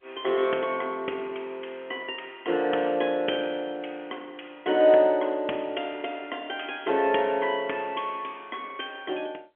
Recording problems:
phone line; 240 Hz to 3.3 kHz, G.711

